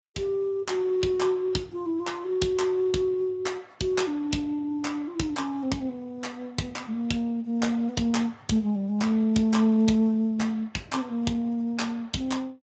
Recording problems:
lossy codec; Speex, log-spectral distance 3 dB, nothing above 7.6 kHz

